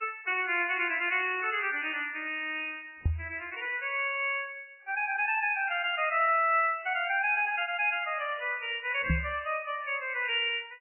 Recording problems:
lossy compression; MP3, log-spectral distance 4 dB, nothing above 2.7 kHz
microphone thump; at 3 s and at 9 s; peak +4 dB vs average level

